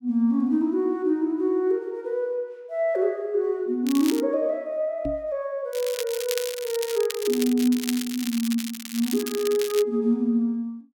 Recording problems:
crackle; at 4 s and from 5.5 to 10 s; loose cable, SNR 9 dB
microphone thump; at 5 s; peak -3 dB vs average level

